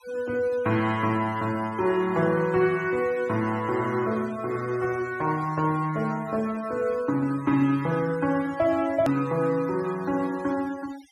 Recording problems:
denoising artefacts; signal-to-artefact ratio 21 dB
edit click; at 9 s

